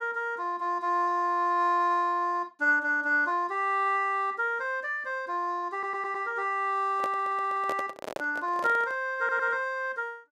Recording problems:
stutter; at 5.5 s, at 7 s and at 9 s
microphone handling noise; from 7 to 9 s; peak -4 dB vs average level

